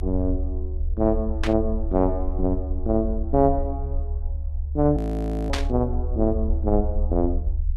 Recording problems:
low-frequency rumble; below 72 Hz, strongest tone 30 Hz, SNR 4 dB
static burst; at 1.5 s and at 5.5 s; peak +2 dB vs average level
audio freezing; at 5 s for 0.5 s

